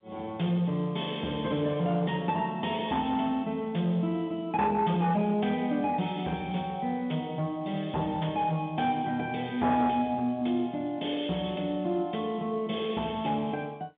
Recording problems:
phone line; 170 Hz to 3.6 kHz, G.711
distorted audio; soft clipping, signal-to-distortion ratio 14 dB

